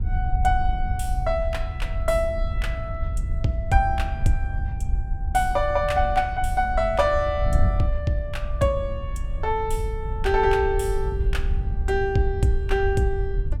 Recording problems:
wind noise; below 72 Hz, SNR 3 dB

